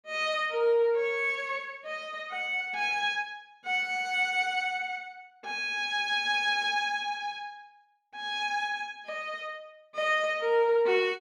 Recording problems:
none

